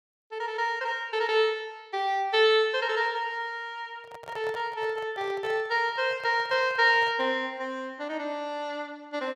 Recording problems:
handling noise; from 4 to 7.5 s; peak -12 dB vs average level

